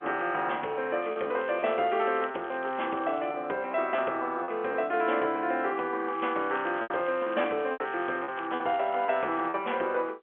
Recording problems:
phone line; 300 Hz to 3.3 kHz, G.711
packet loss; 6% of the sound replaced, filled with repeated pitch periods
crackling; from 1 to 3.5 s and from 6 to 9.5 s; loose cable, SNR 23 dB

